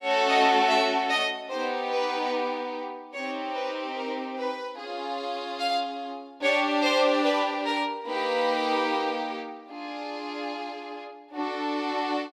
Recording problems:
none

